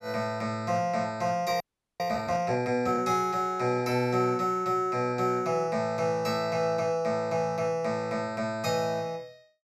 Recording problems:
frozen audio; at 1.5 s

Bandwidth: 12.5 kHz